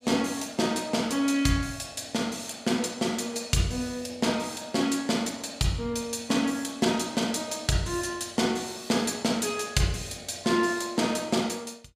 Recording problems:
none

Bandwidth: 15 kHz